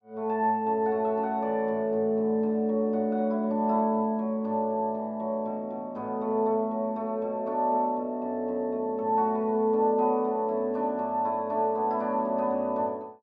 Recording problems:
none

